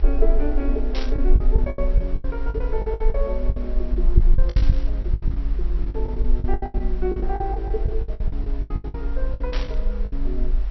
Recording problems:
treble cut off; nothing above 5.8 kHz
hiss; SNR 17 dB
rumble; below 48 Hz, strongest tone 26 Hz, SNR -6 dB
lost packets; 18% of the sound replaced, filled with the last packet
burst of static; at 1 s, at 4.5 s and at 9.5 s; peak +1 dB vs average level

